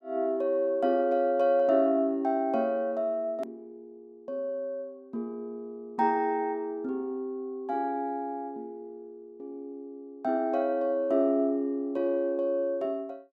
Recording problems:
hard cut with a click; at 3.5 s

